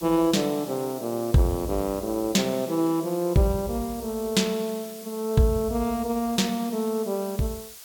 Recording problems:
background hiss; slope +2 dB per octave, SNR 16 dB

